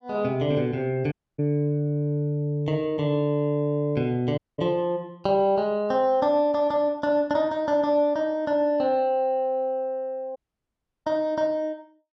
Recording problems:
dropout; at 1 s, at 4.5 s and at 10 s for 0.5 s

